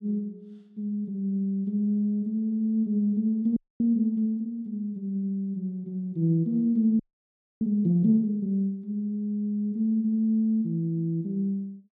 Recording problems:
frozen audio; at 3.5 s and at 7 s for 0.5 s

